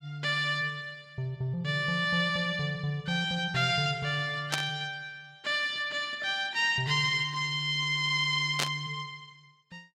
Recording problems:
burst of static; at 4.5 s and at 8.5 s; peak +4 dB vs average level

